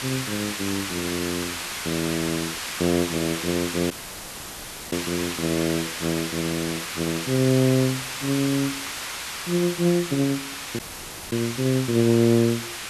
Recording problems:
background hiss; SNR 5 dB
dropout; at 4 s for 1 s and at 11 s for 0.5 s

